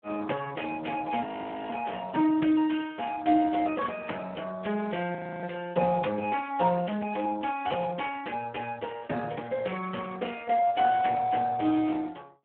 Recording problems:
phone line; 220 Hz to 3.1 kHz, Speex
audio freezing; at 1 s and at 5 s

